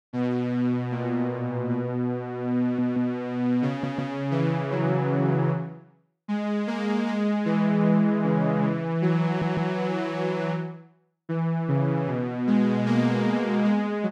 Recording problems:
audio stuttering; at 2.5 s, at 3.5 s and at 9.5 s

